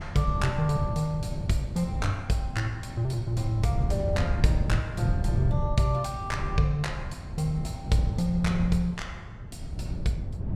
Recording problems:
wind noise; below 140 Hz, SNR 4 dB

